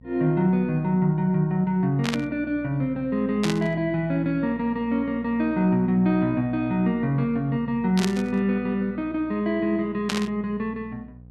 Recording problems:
hum; 60 Hz, harmonics up to 540 Hz, SNR 22 dB
burst of static; 4 times, first at 2 s; peak 0 dB vs average level

